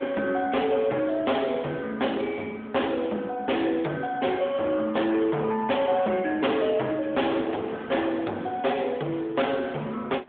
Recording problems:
telephone audio; 260 Hz to 3.4 kHz, AMR-NB
distortion; hard clipping, signal-to-distortion ratio 8 dB
wind noise; below 1.1 kHz, SNR 21 dB

